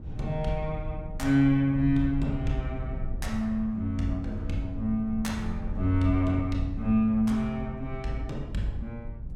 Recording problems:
hum; 60 Hz, harmonics up to 960 Hz, SNR 27 dB
rumble; below 88 Hz, SNR 10 dB

